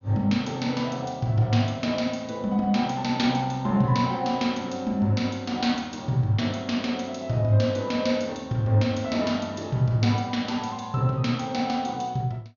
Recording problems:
low-pass filter; nothing above 6.9 kHz

